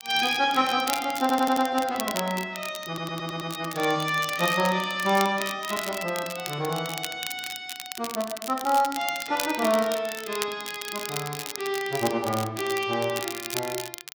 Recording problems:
crackling; vinyl, SNR 9 dB
audio stuttering; at 1 s and at 3 s

